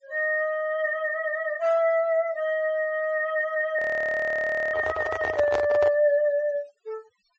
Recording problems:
treble cut off; nothing above 8 kHz
denoising artefacts; signal-to-artefact ratio 25 dB
audio freezing; at 4 s for 1 s
handling noise; from 4.5 to 6 s; peak 0 dB vs average level

